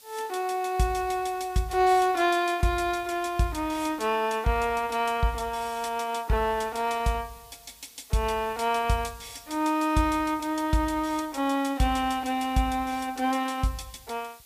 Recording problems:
background hiss; slope +2 dB per octave, SNR 23 dB

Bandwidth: 15 kHz